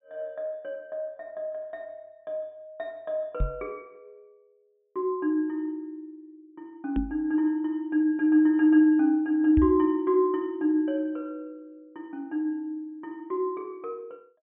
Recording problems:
low-pass filter; nothing above 4 kHz
microphone thump; at 3.5 s, at 7 s and at 9.5 s; peak +2 dB vs average level

